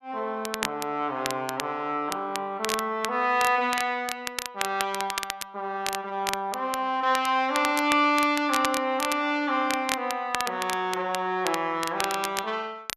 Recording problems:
crackle; vinyl, SNR 8 dB

